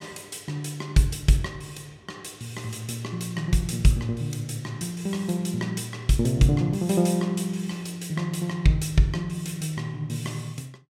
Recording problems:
none

